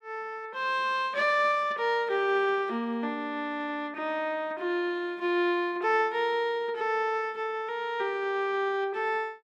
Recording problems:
none

